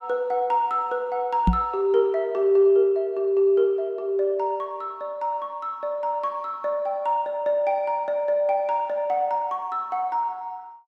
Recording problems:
microphone thump; at 1.5 s; peak +7 dB vs average level

